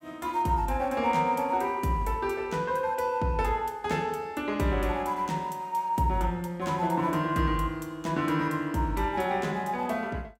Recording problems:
none

